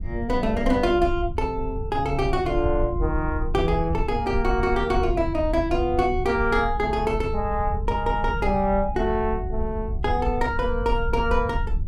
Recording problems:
rumble; below 76 Hz, SNR 6 dB

